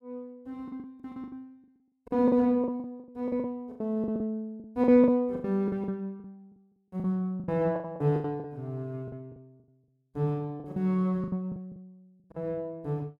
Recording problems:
lost packets; 16% of the sound replaced, filled with the last packet

